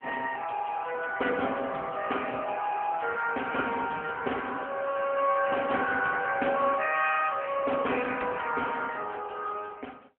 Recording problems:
phone line; 280 Hz to 3.1 kHz, AMR-NB

